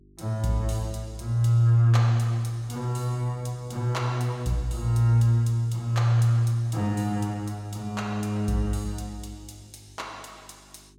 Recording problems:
electrical hum; 50 Hz, harmonics up to 400 Hz, SNR 30 dB

